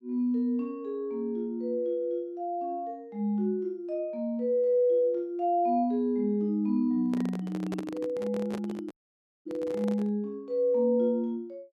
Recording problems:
microphone handling noise; from 7 to 10 s; peak -3 dB vs average level
dropout; at 9 s for 0.5 s

